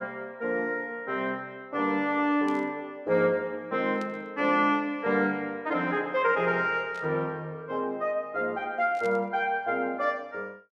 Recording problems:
burst of static; 4 times, first at 2.5 s; peak -14 dB vs average level

